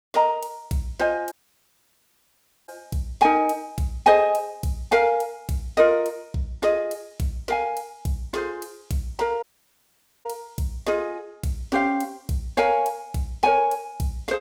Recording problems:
dropout; at 1.5 s for 1.5 s and at 9.5 s for 1 s

